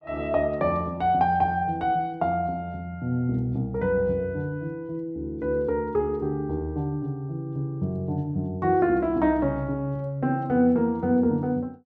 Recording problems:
none

